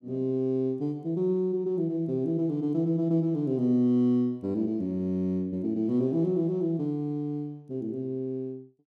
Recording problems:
none

